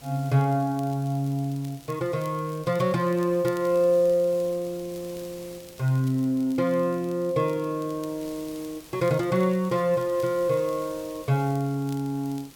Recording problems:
background hiss; SNR 22 dB
crackling; vinyl, SNR 27 dB

